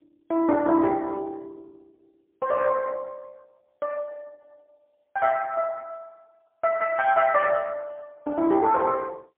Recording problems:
phone line; 300 Hz to 2.6 kHz, AMR-NB, then MP3

